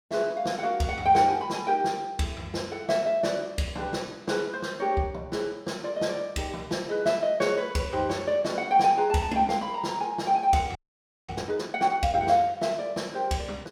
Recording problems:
frozen audio; at 11 s for 0.5 s

